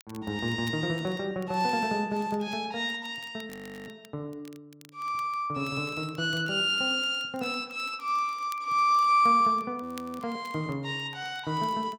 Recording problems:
crackle; vinyl, SNR 27 dB
frozen audio; at 3.5 s and at 10 s

